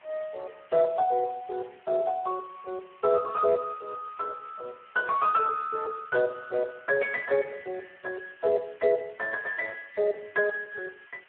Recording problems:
telephone audio; 370 Hz to 2.5 kHz, Speex
hiss; SNR 27 dB

